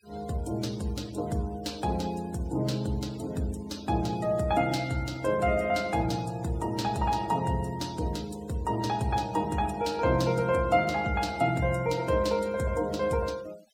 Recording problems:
denoising artefacts; signal-to-artefact ratio 21 dB

